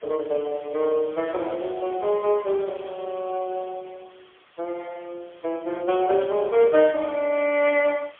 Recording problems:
telephone audio; 300 Hz to 3.3 kHz, AMR-NB, then MP3
hiss; SNR 27 dB

